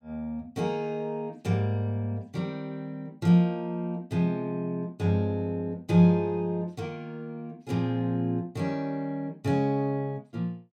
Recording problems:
none

